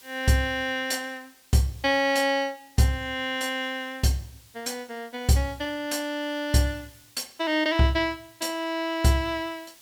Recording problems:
hiss; SNR 26 dB

